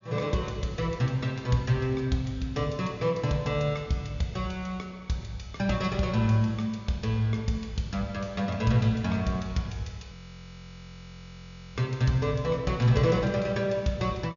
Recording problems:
low-pass filter; nothing above 7 kHz
audio freezing; at 10 s for 1.5 s

